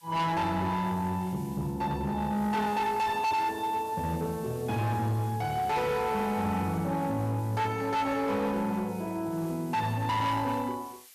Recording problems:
distorted audio; hard clipping, signal-to-distortion ratio 10 dB
background hiss; slope +4 dB per octave, SNR 22 dB

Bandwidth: 14 kHz